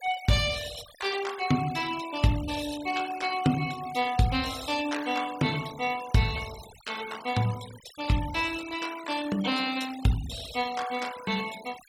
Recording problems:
denoising artefacts; signal-to-artefact ratio 14 dB

